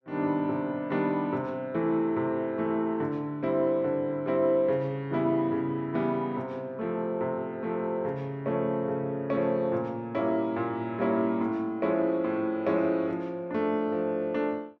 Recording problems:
none

